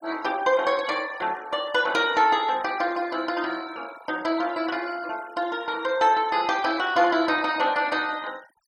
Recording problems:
denoising artefacts; signal-to-artefact ratio 21 dB

